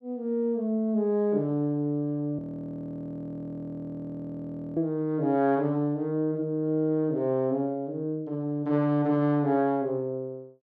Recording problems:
frozen audio; at 2.5 s for 2.5 s

